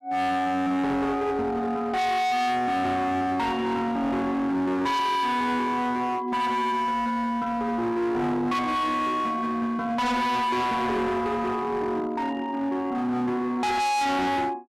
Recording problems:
distortion; hard clipping, signal-to-distortion ratio 6 dB

